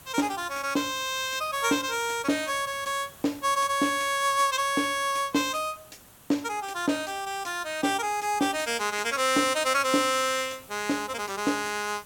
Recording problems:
background hiss; slope -3 dB per octave, SNR 22 dB

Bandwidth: 17 kHz